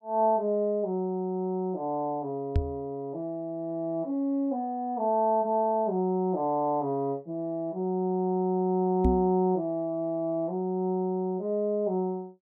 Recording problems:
microphone bump; at 2.5 s and at 9 s; peak +6 dB vs average level

